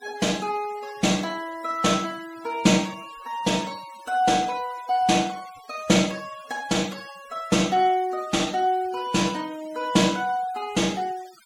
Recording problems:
denoising artefacts; signal-to-artefact ratio 20 dB

